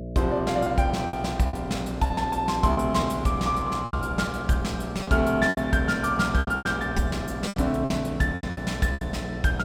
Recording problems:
electrical hum; 60 Hz, harmonics up to 660 Hz, SNR 10 dB
lost packets; 11% of the sound replaced, filled with repeated pitch periods

